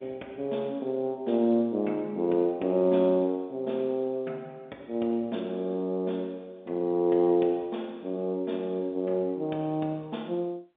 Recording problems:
telephone audio; 190 Hz to 3.7 kHz, G.711

